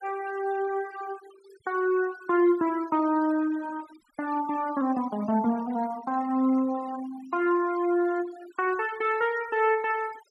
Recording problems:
denoising artefacts; signal-to-artefact ratio 19 dB

